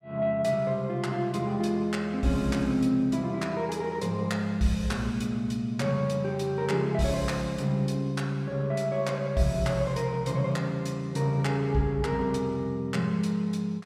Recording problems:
none

